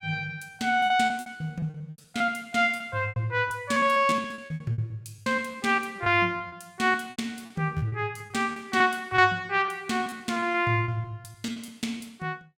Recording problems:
lost packets; 16% of the sound replaced, filled with repeated pitch periods

